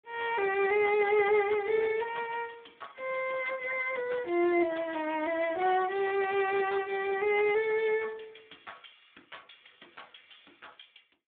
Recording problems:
telephone audio; 190 Hz to 3.6 kHz, Speex

